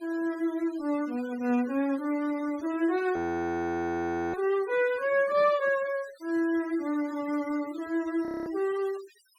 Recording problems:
denoising artefacts; signal-to-artefact ratio 19 dB
audio freezing; at 3 s for 1 s and at 8.5 s

